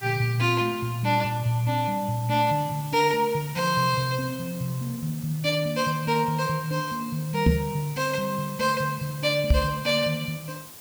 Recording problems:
background hiss; slope -2 dB per octave, SNR 16 dB
microphone thump; at 7.5 s and at 9.5 s; peak +8 dB vs average level

